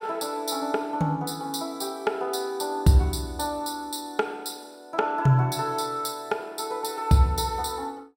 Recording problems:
none

